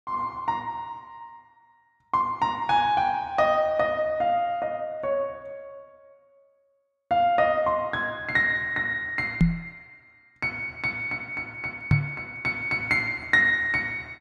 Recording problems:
microphone thump; at 9.5 s and at 12 s; peak +8 dB vs average level

